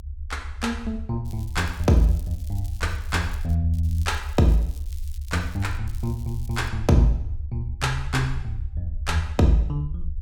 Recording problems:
rumble; below 76 Hz, SNR 8 dB
crackling; from 1.5 to 3.5 s, from 3.5 to 6 s and at 6 s; loose cable, SNR 24 dB

